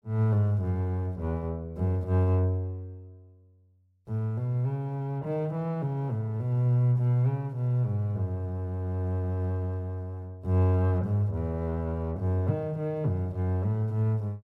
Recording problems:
none

